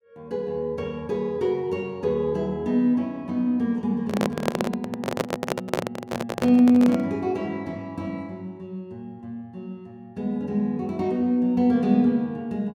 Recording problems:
microphone handling noise; from 4 to 7 s; peak +4 dB vs average level

